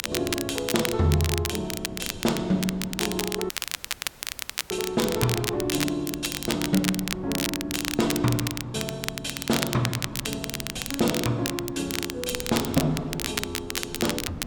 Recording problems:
hum; 60 Hz, harmonics up to 660 Hz, SNR 24 dB
wind noise; below 300 Hz, SNR 15 dB
crackling; vinyl, SNR 3 dB
dropout; at 3.5 s for 1 s

